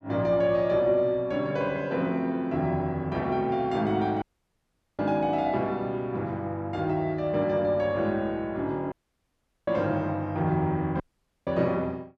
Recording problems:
dropout; at 4 s for 1 s, at 9 s for 1 s and at 11 s

